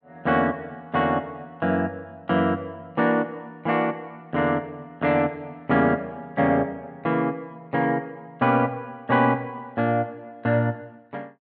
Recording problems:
none

